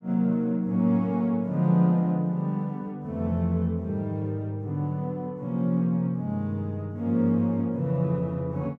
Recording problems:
none

